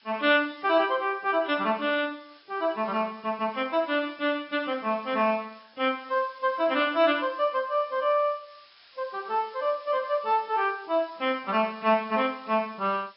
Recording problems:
treble cut off; nothing above 5.3 kHz
lossy compression; AAC, log-spectral distance 8 dB
background hiss; SNR 27 dB

